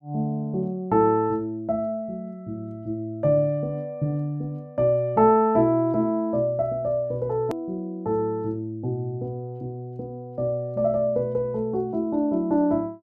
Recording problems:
edit click; at 7.5 s

